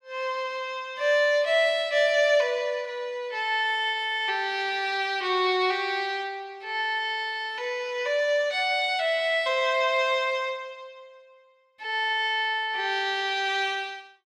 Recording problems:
none

